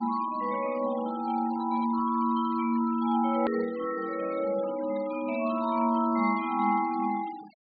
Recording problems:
treble cut off; nothing above 4.7 kHz
noise reduction artefacts; signal-to-artefact ratio 20 dB
click at an edit; at 3.5 s

